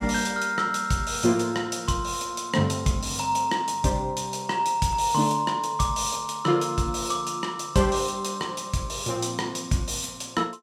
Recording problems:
none

